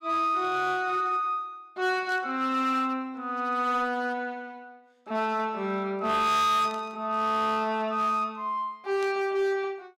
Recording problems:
distortion; hard clipping, signal-to-distortion ratio 11 dB
static burst; at 2 s, at 6.5 s and at 9 s; peak -14 dB vs average level

